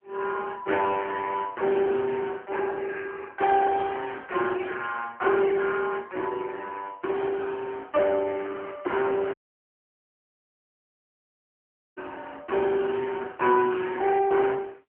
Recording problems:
phone line; 260 Hz to 3.1 kHz, AMR-NB
audio cutting out; at 9.5 s for 2.5 s

